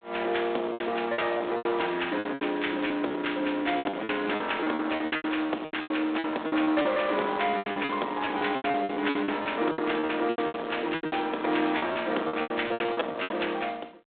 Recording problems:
phone line; 240 Hz to 3.7 kHz, G.726
distorted audio; soft clipping, signal-to-distortion ratio 13 dB
lost packets; 19% of the sound replaced, filled with repeated pitch periods

